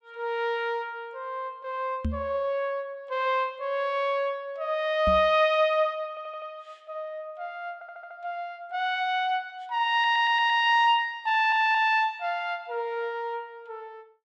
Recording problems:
microphone thump; at 2 s and at 5 s; peak 0 dB vs average level
audio stuttering; 4 times, first at 6 s

